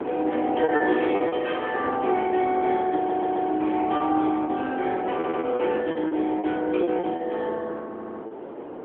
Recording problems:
telephone audio; 260 Hz to 3.3 kHz, AMR-NB
wind on the microphone; below 640 Hz, SNR 9 dB
packet loss; 8% of the sound replaced, filled with repeated pitch periods
audio stuttering; at 3 s, at 5 s and at 8 s

